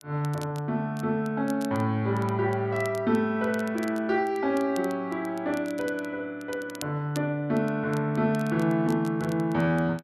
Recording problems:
crackle; vinyl, SNR 21 dB

